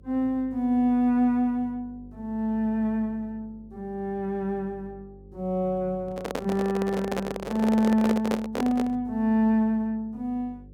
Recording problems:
hum; 50 Hz, harmonics up to 550 Hz, SNR 23 dB
handling noise; from 6 to 9 s; peak +1 dB vs average level

